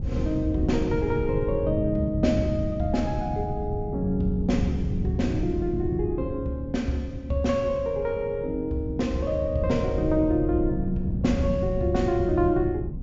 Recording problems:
treble missing; nothing above 7.3 kHz
wind on the microphone; below 160 Hz, SNR 5 dB

